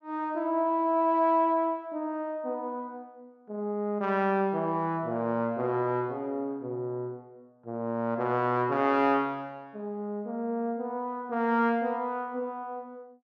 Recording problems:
none

